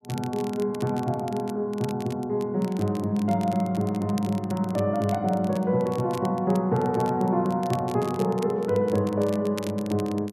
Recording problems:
crackle; vinyl, SNR 20 dB

